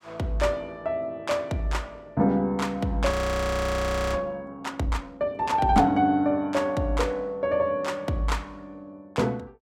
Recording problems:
frozen audio; at 3 s for 1 s

